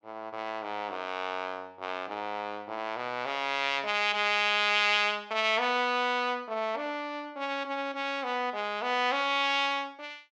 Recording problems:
none

